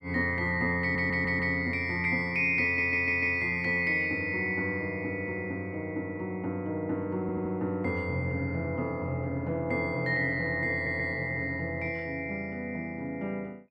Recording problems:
stutter; 4 times, first at 1 s

